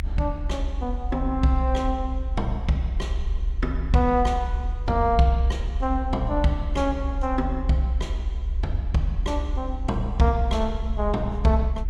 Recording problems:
rumble; below 64 Hz, strongest tone 38 Hz, SNR 4 dB

